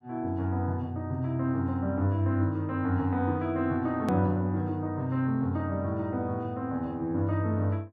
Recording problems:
click at an edit; at 4 s

